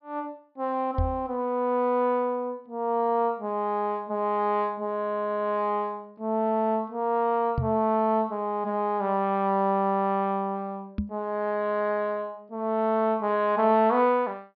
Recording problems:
treble missing; nothing above 5.5 kHz
microphone bump; at 1 s, at 7.5 s and at 11 s; peak +2 dB vs average level

